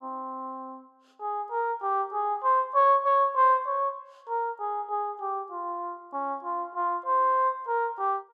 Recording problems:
none

